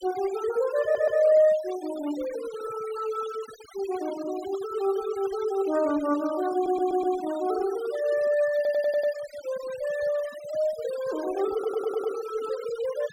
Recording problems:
noise reduction artefacts; signal-to-artefact ratio 17 dB
stutter; 4 times, first at 1 s

